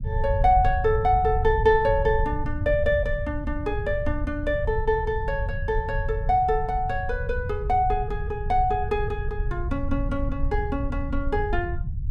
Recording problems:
low-frequency rumble; below 86 Hz, SNR 5 dB

